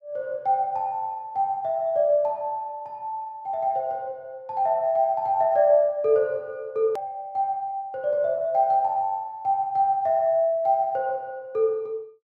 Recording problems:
click at an edit; at 7 s

